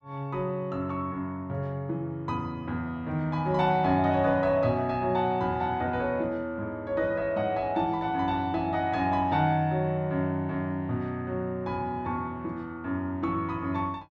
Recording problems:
none

